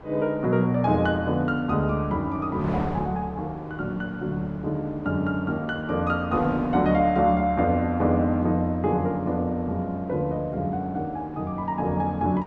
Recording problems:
wind on the microphone; below 860 Hz, SNR 17 dB

